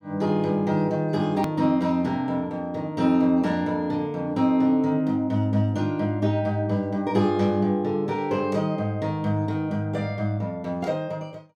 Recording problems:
hard cut with a click; at 1.5 s

